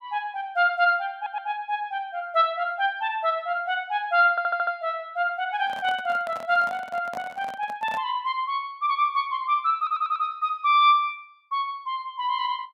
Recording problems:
audio stuttering; at 1 s, at 4.5 s and at 10 s
microphone handling noise; from 5.5 to 8 s; peak -8 dB vs average level

